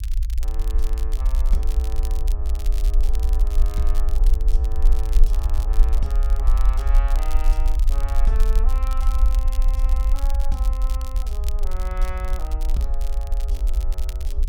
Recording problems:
low-frequency rumble; below 48 Hz, SNR -13 dB
crackling; vinyl, SNR 7 dB

